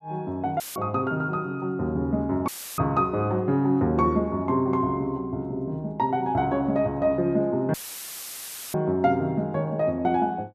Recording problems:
dropout; at 0.5 s, at 2.5 s and at 7.5 s for 1 s; filled with static

